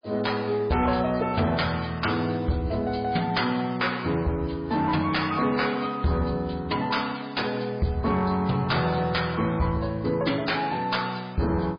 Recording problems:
lossy codec; MP3, log-spectral distance 6 dB, nothing above 5 kHz
distortion; hard clipping, uneven, signal-to-distortion ratio 10 dB

